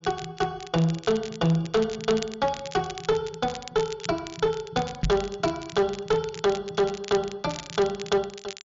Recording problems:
low-pass filter; nothing above 7.2 kHz
distorted audio; hard clipping, uneven, signal-to-distortion ratio 10 dB
crackling; vinyl, SNR 14 dB
microphone thump; at 5 s; peak +3 dB vs average level

